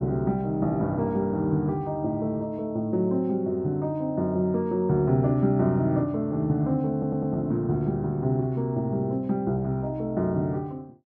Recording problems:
stutter; at 7 s

